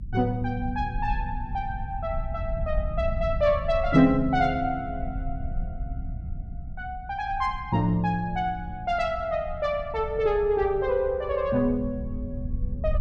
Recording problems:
rumble; below 80 Hz, SNR 9 dB

